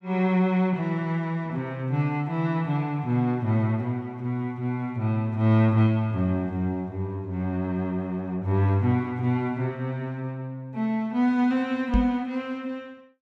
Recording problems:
microphone bump; at 12 s; peak +5 dB vs average level

